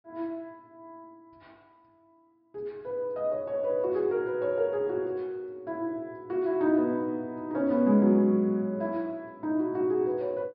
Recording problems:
treble missing; nothing above 5.5 kHz

